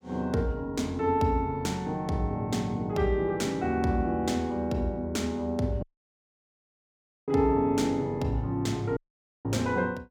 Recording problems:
audio cutting out; at 6 s for 1.5 s and at 9 s

